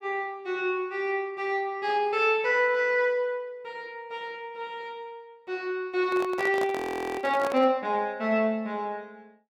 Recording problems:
handling noise; from 6 to 7.5 s; peak -3 dB vs average level
frozen audio; at 7 s

